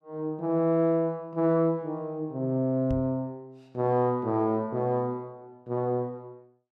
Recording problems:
microphone bump; at 3 s; peak -4 dB vs average level

